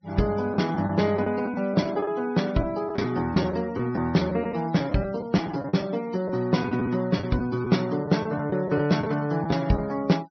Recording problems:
low-pass filter; nothing above 5.8 kHz
noise reduction artefacts; signal-to-artefact ratio 21 dB
packet loss; 7% of the sound replaced, filled with the last packet

